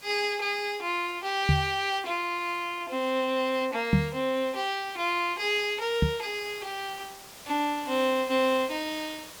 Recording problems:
background hiss; slope -1 dB per octave, SNR 18 dB
microphone thump; at 1.5 s, at 4 s and at 6 s; peak +9 dB vs average level

